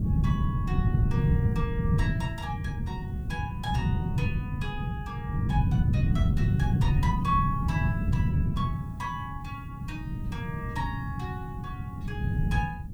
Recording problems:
background hiss; slope +2 dB per octave, SNR 28 dB
wind on the microphone; below 170 Hz, SNR -8 dB

